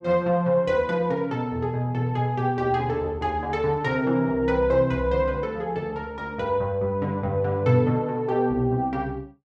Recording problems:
none

